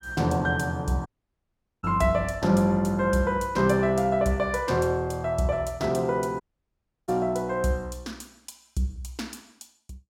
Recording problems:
dropout; at 1 s for 1 s and at 6.5 s for 0.5 s

